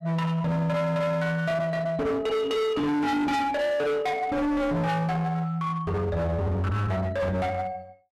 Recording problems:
distortion; hard clipping, uneven, signal-to-distortion ratio 6 dB

